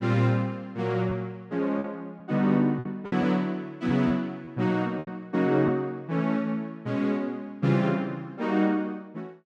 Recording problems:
lost packets; 4% of the sound replaced, filled with repeated pitch periods

